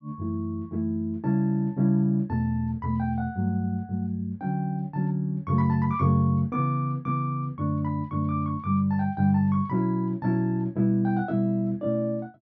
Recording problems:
treble cut off; nothing above 6.4 kHz

